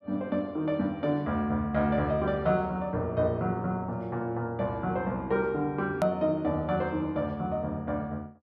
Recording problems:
hard cut with a click; at 6 s

